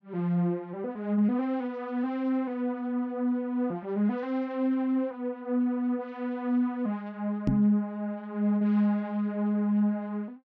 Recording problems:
microphone thump; at 7.5 s; peak +6 dB vs average level

